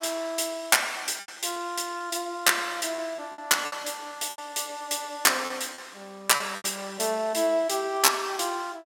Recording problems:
lost packets; 7% of the sound replaced, filled with repeated pitch periods

